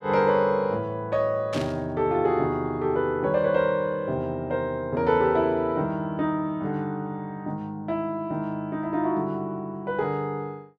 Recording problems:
static burst; at 1.5 s; peak -6 dB vs average level

